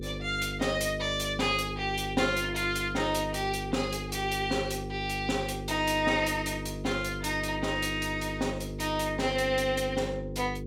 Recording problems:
hum; 50 Hz, harmonics up to 500 Hz, SNR 8 dB

